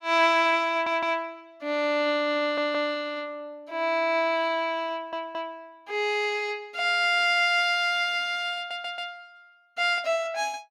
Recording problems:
stutter; 4 times, first at 0.5 s

